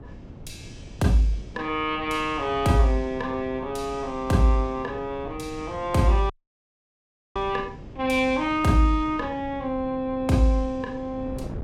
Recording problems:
wind on the microphone; below 260 Hz, SNR 17 dB
audio cutting out; at 6.5 s for 1 s

